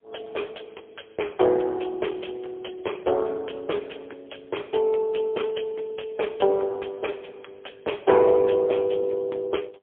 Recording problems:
telephone audio; 320 Hz to 3.4 kHz, AMR-NB, then MP3

